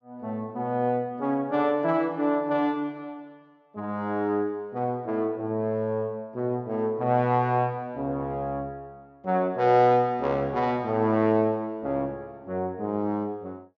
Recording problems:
treble cut off; nothing above 7.4 kHz

